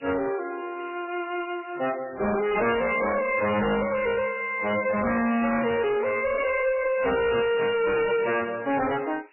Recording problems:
lossy compression; AAC, then MP3, log-spectral distance 8 dB, nothing above 2.8 kHz
distorted audio; hard clipping, signal-to-distortion ratio 6 dB
hiss; SNR 27 dB

